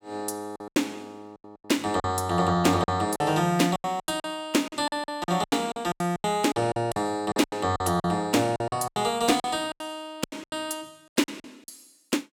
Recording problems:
lost packets; 17% of the sound replaced, filled with silence

